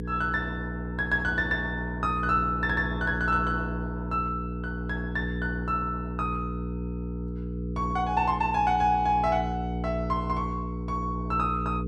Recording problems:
electrical hum; 60 Hz, harmonics up to 480 Hz, SNR 5 dB

